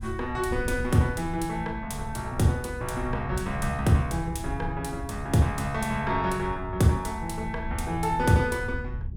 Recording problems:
wind noise; below 100 Hz, SNR 10 dB

